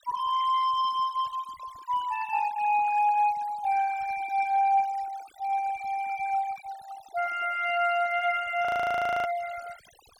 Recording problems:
denoising artefacts; signal-to-artefact ratio 19 dB
audio freezing; at 8.5 s for 0.5 s

